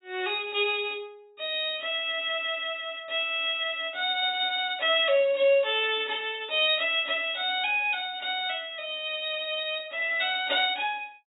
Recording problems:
low-pass filter; nothing above 4 kHz

